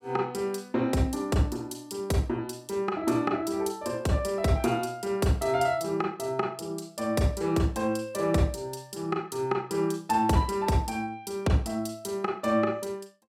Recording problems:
none

